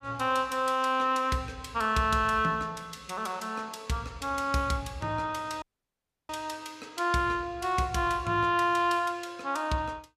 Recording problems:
audio cutting out; at 5.5 s for 0.5 s

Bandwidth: 15 kHz